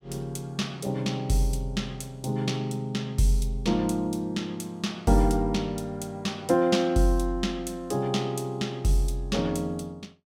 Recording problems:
none

